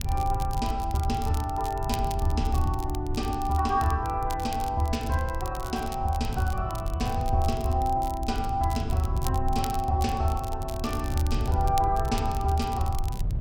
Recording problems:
wind on the microphone; below 94 Hz, SNR 5 dB
crackling; vinyl, SNR 16 dB

